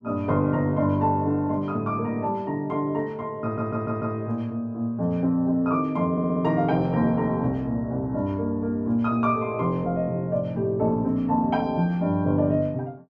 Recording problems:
audio stuttering; at 3.5 s and at 6 s

